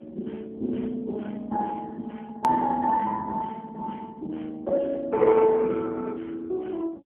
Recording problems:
telephone audio; 260 Hz to 2 kHz, AMR-NB
edit click; at 2.5 s

